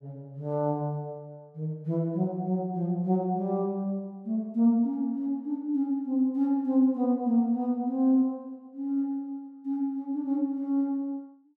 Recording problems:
none

